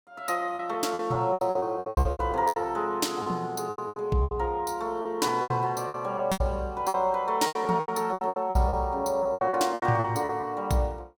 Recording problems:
packet loss; 18% of the sound replaced, filled with repeated pitch periods

